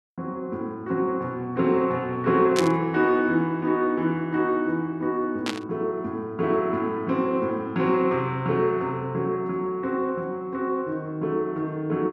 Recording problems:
burst of static; at 2.5 s and at 5.5 s; peak +2 dB vs average level

